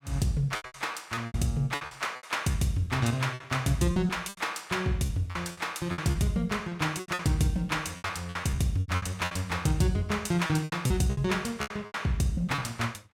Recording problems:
packet loss; 15% of the sound replaced, filled with repeated pitch periods

